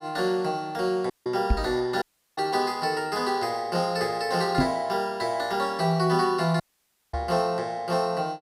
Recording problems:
dropout; at 1 s, at 2 s and at 6.5 s for 0.5 s
microphone bump; at 1.5 s, at 4.5 s and at 7 s; peak +6 dB vs average level

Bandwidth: 15.5 kHz